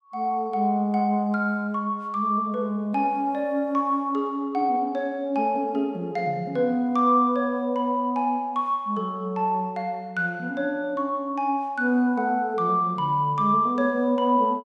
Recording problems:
none

